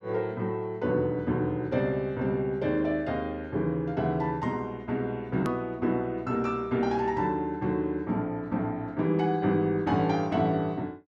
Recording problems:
edit click; at 5.5 s

